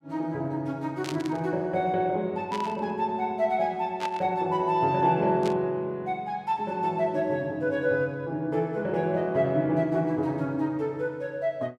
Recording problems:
burst of static; 4 times, first at 1 s; peak -5 dB vs average level

